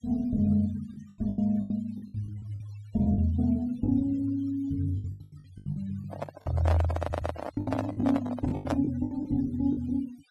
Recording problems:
denoising artefacts; signal-to-artefact ratio 20 dB
lost packets; 13% of the sound replaced, filled with the last packet
handling noise; from 6 to 9 s; peak +2 dB vs average level
stutter; at 7 s

